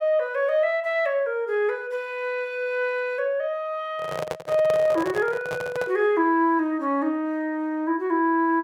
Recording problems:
microphone handling noise; from 4 to 6 s; peak -2 dB vs average level

